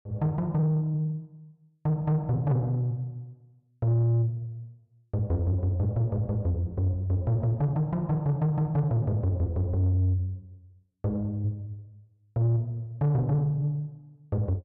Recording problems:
distorted audio; soft clipping, signal-to-distortion ratio 11 dB

